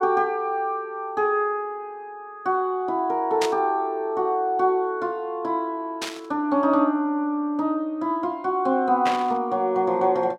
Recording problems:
burst of static; at 3.5 s, at 6 s and at 9 s; peak 0 dB vs average level

